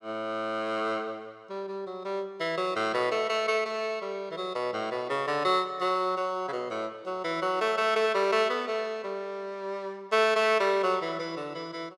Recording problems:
none

